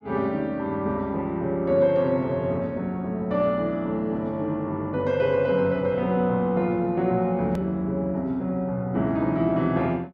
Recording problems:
click at an edit; at 7.5 s

